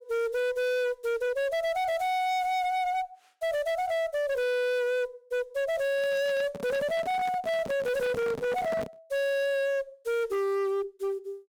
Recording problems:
distortion; hard clipping, uneven, signal-to-distortion ratio 7 dB
microphone handling noise; from 6 to 9 s; peak -4 dB vs average level

